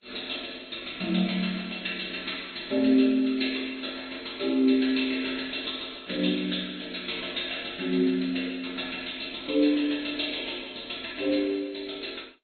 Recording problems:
lossy compression; MP2, then AAC, log-spectral distance 14 dB, nothing above 4.2 kHz

